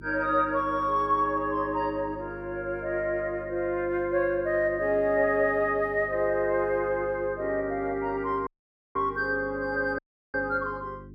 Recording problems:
hum; 50 Hz, harmonics up to 400 Hz, SNR 19 dB
audio cutting out; at 8.5 s and at 10 s

